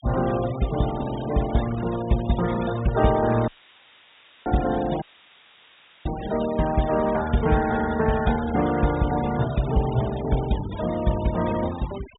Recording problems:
treble missing; nothing above 4 kHz
noise reduction artefacts; signal-to-artefact ratio 15 dB
audio cutting out; at 3.5 s for 1 s and at 5 s for 1 s; filled with static

